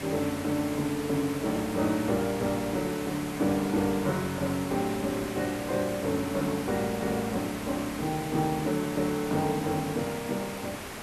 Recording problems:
background hiss; slope -4 dB per octave, SNR 8 dB

